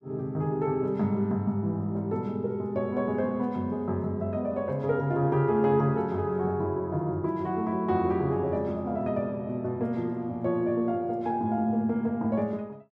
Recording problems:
none

